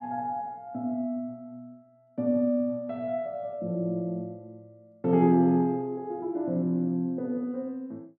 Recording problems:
none

